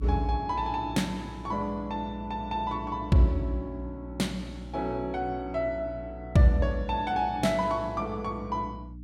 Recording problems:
hum; 60 Hz, harmonics up to 300 Hz, SNR 13 dB

